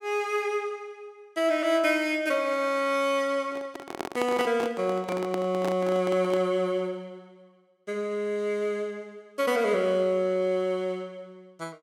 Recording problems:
microphone handling noise; from 3.5 to 6.5 s; peak -2 dB vs average level

